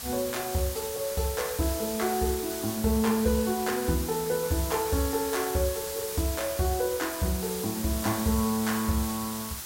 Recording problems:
background hiss; slope +1 dB per octave, SNR 6 dB

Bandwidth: 16 kHz